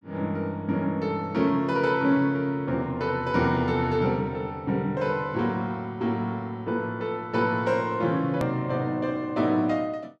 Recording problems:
click at an edit; at 8.5 s

